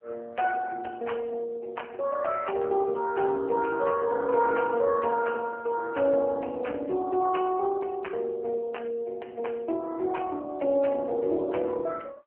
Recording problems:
telephone audio; 260 Hz to 3 kHz, AMR-NB

